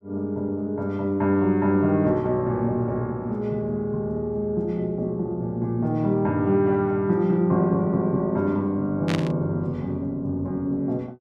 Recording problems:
static burst; at 9 s; peak -2 dB vs average level

